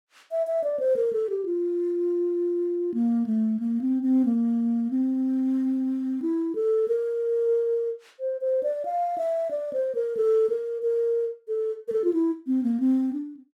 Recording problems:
none

